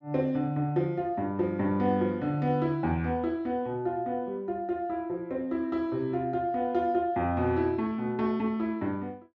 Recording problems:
treble missing; nothing above 7.9 kHz

